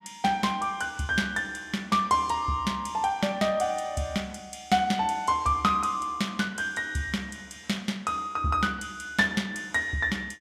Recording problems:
none

